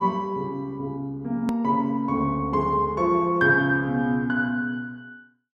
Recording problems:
edit click; at 1.5 s

